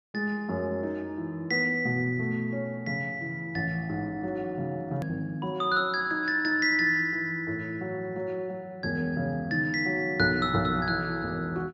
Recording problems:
low-pass filter; nothing above 7.3 kHz
hard cut with a click; at 5 s

